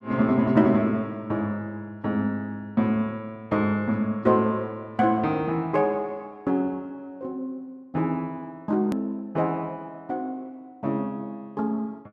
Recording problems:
hard cut with a click; at 9 s

